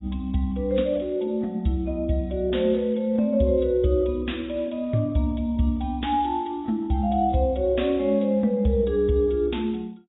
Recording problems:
codec artefacts; AAC, log-spectral distance 3 dB, nothing above 3.8 kHz

